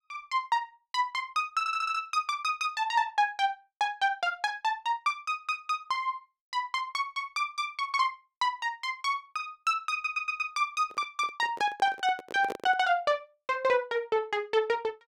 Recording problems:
audio stuttering; at 1.5 s and at 10 s
handling noise; from 11 to 13 s; peak -3 dB vs average level

